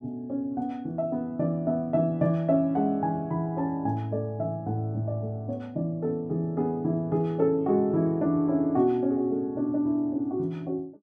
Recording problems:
none

